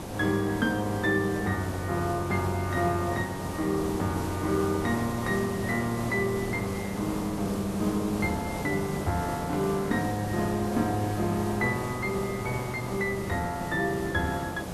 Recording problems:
hiss; slope -7 dB per octave, SNR 7 dB

